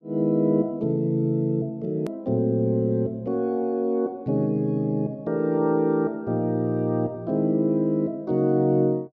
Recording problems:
click at an edit; at 2 s

